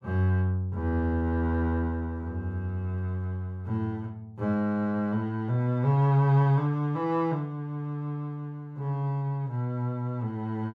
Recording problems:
none

